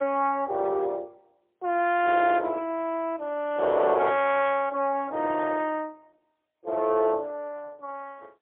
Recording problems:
phone line; 300 Hz to 3.5 kHz, AMR-NB, then MP3

